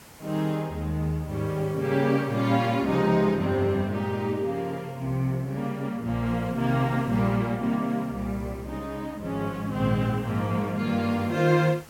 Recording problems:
background hiss; slope -3 dB per octave, SNR 24 dB

